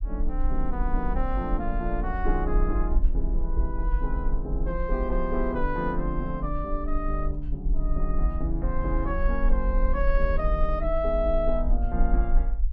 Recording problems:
low-frequency rumble; below 46 Hz, SNR -1 dB

